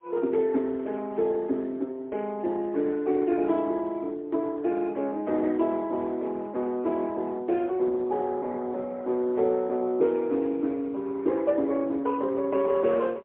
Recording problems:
telephone audio; 220 Hz to 3.4 kHz, AMR-NB, then MP3

